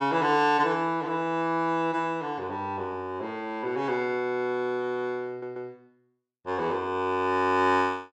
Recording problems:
stutter; at 5.5 s

